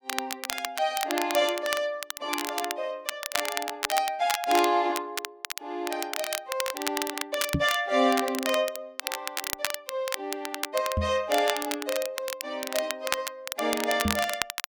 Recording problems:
crackle; vinyl, SNR 4 dB
microphone thump; at 7.5 s, at 11 s and at 14 s; peak +6 dB vs average level

